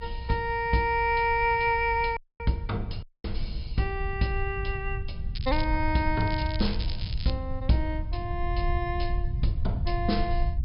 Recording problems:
treble cut off; nothing above 5.5 kHz
rumble; below 84 Hz, SNR 5 dB
audio cutting out; at 2 s and at 3 s
crackling; at 5.5 s and from 6 to 7.5 s; loose cable, SNR 13 dB

